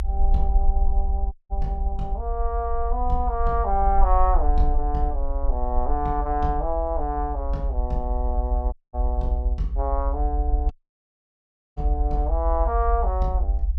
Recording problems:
rumble; below 60 Hz, SNR -1 dB
audio cutting out; at 1.5 s, at 8.5 s and at 11 s for 1 s

